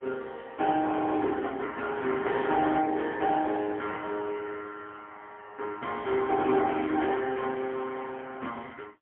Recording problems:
telephone audio; 280 Hz to 3.4 kHz, AMR-NB, then MP3
frozen audio; at 1 s

